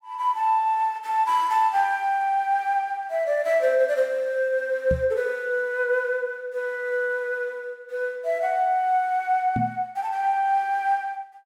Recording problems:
knock on the microphone; at 5 s and at 9.5 s; peak 0 dB vs average level

